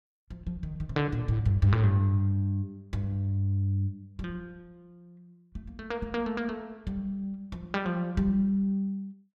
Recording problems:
none

